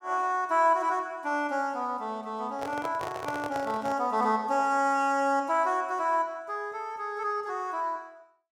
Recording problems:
microphone handling noise; from 2.5 to 4 s; peak -4 dB vs average level

